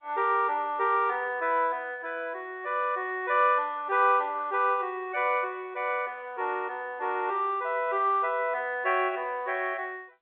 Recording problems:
telephone audio; 320 Hz to 3.9 kHz, G.711

